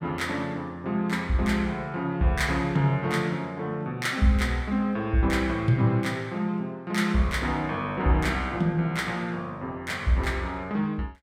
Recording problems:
none

